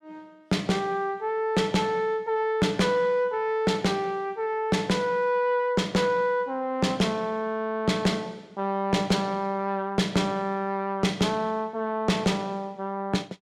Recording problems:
distortion; soft clipping, signal-to-distortion ratio 10 dB

